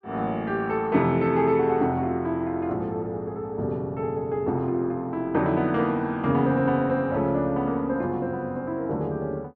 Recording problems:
none

